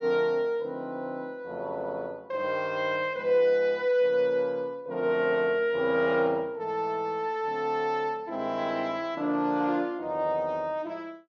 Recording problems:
low-pass filter; nothing above 6.7 kHz

